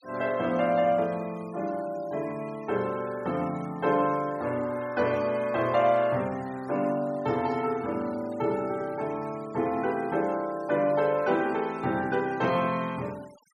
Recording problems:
noise reduction artefacts; signal-to-artefact ratio 22 dB

